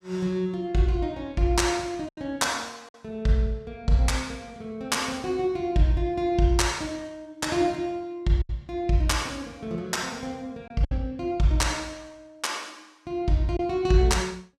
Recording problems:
lost packets; 1.9% of the sound replaced, filled with silence

